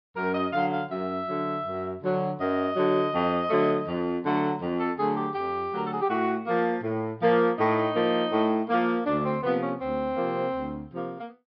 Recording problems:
treble missing; nothing above 5.5 kHz

